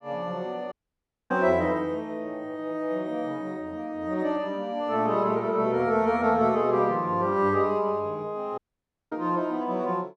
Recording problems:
audio cutting out; at 0.5 s for 0.5 s and at 8.5 s for 0.5 s

